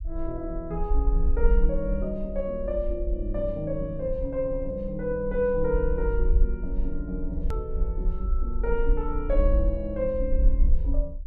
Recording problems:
low-frequency rumble; below 50 Hz, SNR 0 dB
edit click; at 7.5 s

